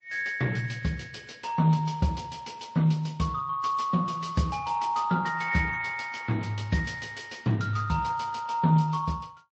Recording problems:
codec artefacts; Speex, then MP3, log-spectral distance 4 dB, nothing above 7.8 kHz

